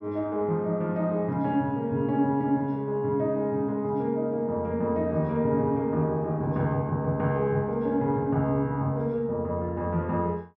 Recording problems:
none

